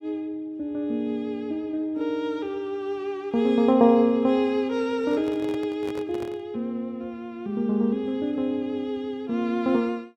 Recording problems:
microphone handling noise; from 5 to 6.5 s; peak -8 dB vs average level

